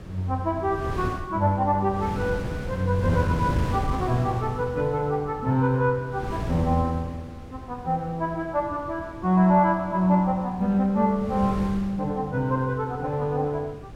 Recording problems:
wind on the microphone; below 290 Hz, SNR 10 dB

